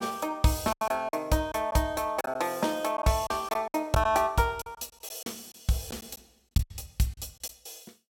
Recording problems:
lost packets; 9% of the sound replaced, filled with silence

